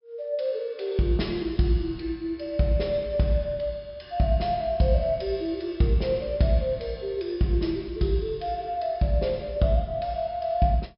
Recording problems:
treble missing; nothing above 5.3 kHz

